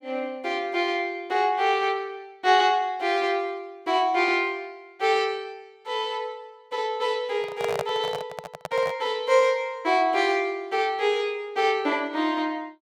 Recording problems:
microphone handling noise; from 7.5 to 9 s; peak 0 dB vs average level

